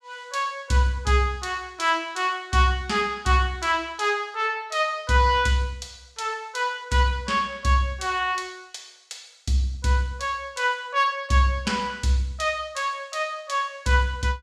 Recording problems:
none

